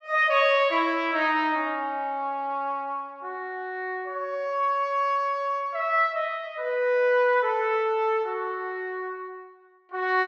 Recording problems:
none

